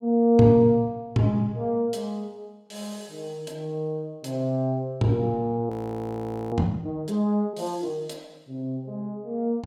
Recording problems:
audio freezing; at 5.5 s for 1 s

